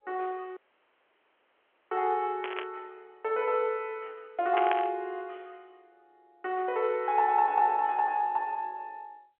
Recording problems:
telephone audio; 300 Hz to 3.4 kHz, G.711
audio cutting out; at 0.5 s for 1.5 s
static burst; at 2.5 s and at 4.5 s; peak +1 dB vs average level

